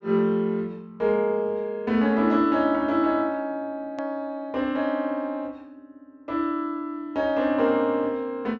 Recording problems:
treble cut off; nothing above 8 kHz
click at an edit; at 4 s

